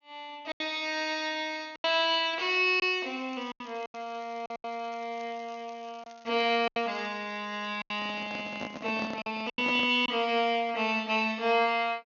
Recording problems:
treble missing; nothing above 6.7 kHz
lost packets; 7% of the sound replaced, filled with silence
crackle; from 2.5 to 9 s; loose cable, SNR 28 dB
microphone handling noise; from 8 to 10 s; peak -3 dB vs average level

